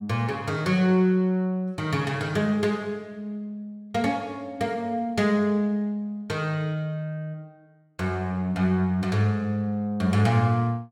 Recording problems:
none

